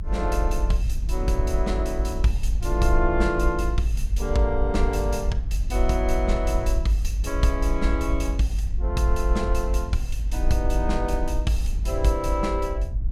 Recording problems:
rumble; below 52 Hz, strongest tone 48 Hz, SNR 0 dB

